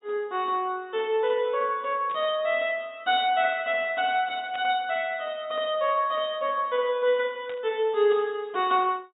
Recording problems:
treble cut off; nothing above 4 kHz
burst of static; at 2 s, at 4.5 s and at 7.5 s; peak -13 dB vs average level

